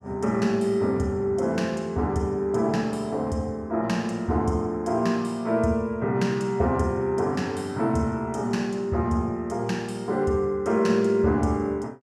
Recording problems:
none

